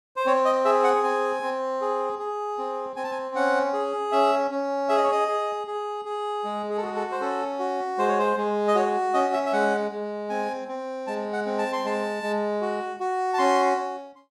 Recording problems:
none

